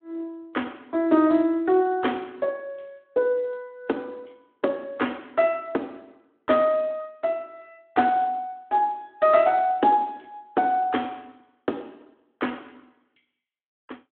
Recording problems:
phone line; 220 Hz to 3.4 kHz, Speex

